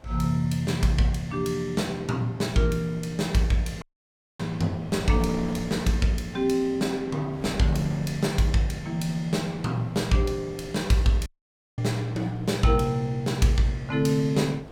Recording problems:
wind on the microphone; below 650 Hz, SNR 18 dB
audio cutting out; at 4 s for 0.5 s and at 11 s for 0.5 s

